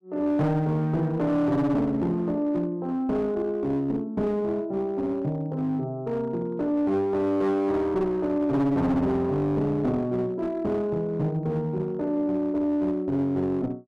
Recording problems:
distorted audio; hard clipping, uneven, signal-to-distortion ratio 10 dB

